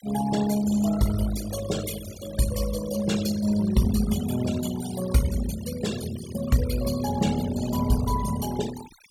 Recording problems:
denoising artefacts; signal-to-artefact ratio 13 dB

